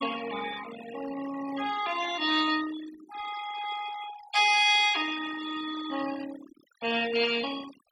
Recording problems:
denoising artefacts; signal-to-artefact ratio 13 dB

